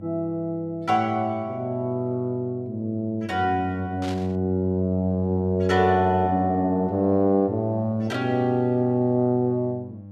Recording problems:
electrical hum; 50 Hz, harmonics up to 800 Hz, SNR 21 dB
static burst; at 4 s; peak -10 dB vs average level

